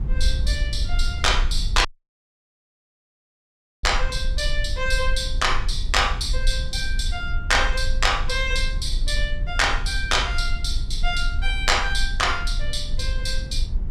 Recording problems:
low-frequency rumble; below 50 Hz, SNR 4 dB
audio cutting out; at 2 s for 2 s

